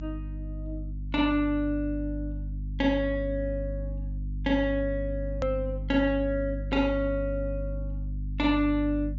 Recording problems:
treble missing; nothing above 7.3 kHz
mains hum; 50 Hz, harmonics up to 300 Hz, SNR 6 dB
hard cut with a click; at 5.5 s

